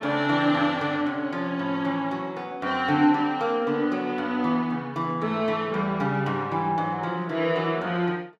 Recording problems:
none

